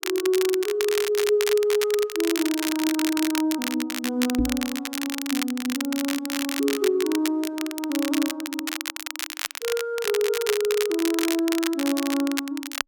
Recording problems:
crackle; vinyl, SNR 5 dB
audio stuttering; at 3 s
microphone bump; at 4.5 s; peak +3 dB vs average level

